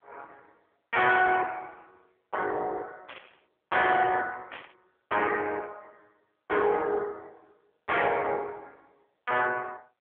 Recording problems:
telephone audio; 260 Hz to 3.5 kHz, AMR-NB
distorted audio; soft clipping, signal-to-distortion ratio 11 dB
static burst; at 3 s, at 4.5 s and at 8 s; peak -10 dB vs average level

